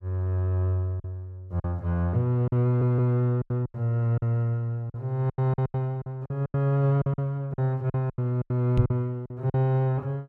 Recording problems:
lost packets; 12% of the sound replaced, filled with silence
stutter; at 2.5 s
microphone thump; at 9 s; peak +4 dB vs average level

